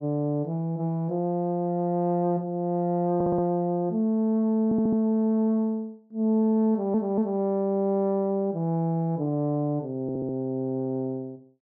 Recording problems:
stutter; 4 times, first at 3 s

